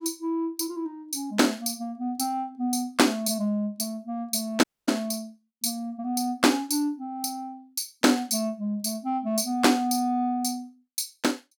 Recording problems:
audio cutting out; at 4.5 s

